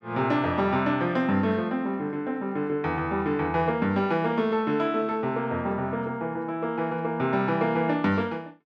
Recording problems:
none

